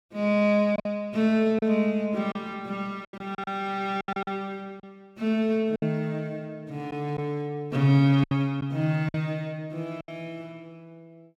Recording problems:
packet loss; 7% of the sound replaced, filled with silence

